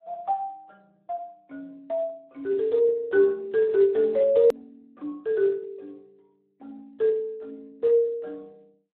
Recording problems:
phone line; 300 Hz to 3.5 kHz, Speex
edit click; at 4.5 s

